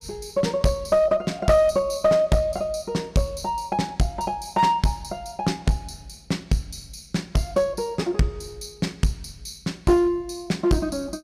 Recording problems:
distorted audio; hard clipping, uneven, signal-to-distortion ratio 11 dB

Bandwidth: 15 kHz